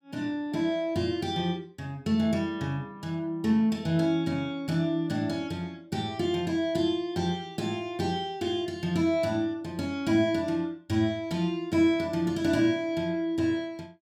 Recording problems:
none

